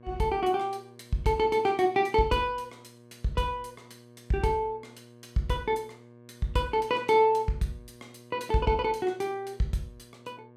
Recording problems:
electrical hum; 60 Hz, harmonics up to 1.2 kHz, SNR 24 dB

